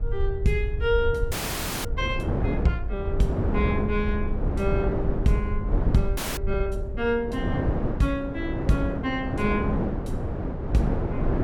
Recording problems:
rumble; below 74 Hz, SNR 5 dB
wind on the microphone; below 390 Hz, SNR 2 dB
audio freezing; at 1.5 s for 0.5 s and at 6 s

